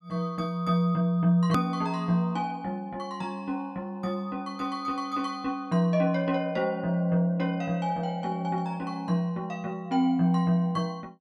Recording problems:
hard cut with a click; at 1.5 s

